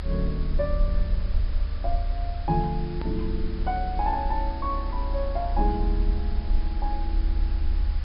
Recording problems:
low-pass filter; nothing above 5.5 kHz
hiss; slope -3 dB per octave, SNR 15 dB
low-frequency rumble; below 66 Hz, strongest tone 36 Hz, SNR -2 dB
hard cut with a click; at 3 s

